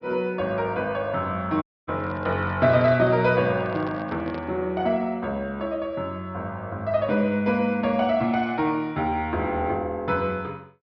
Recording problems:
treble cut off; nothing above 5.5 kHz
audio cutting out; at 1.5 s
handling noise; from 2 to 4.5 s; peak -8 dB vs average level

